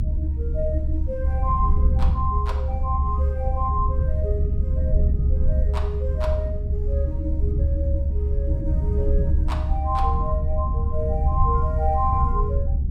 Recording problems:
low-frequency rumble; below 72 Hz, SNR -5 dB

